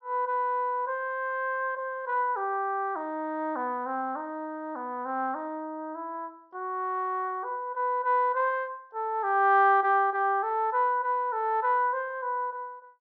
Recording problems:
treble missing; nothing above 6 kHz

